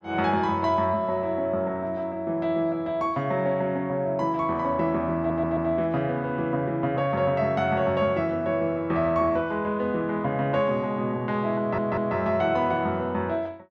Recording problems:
stutter; at 5 s and at 12 s

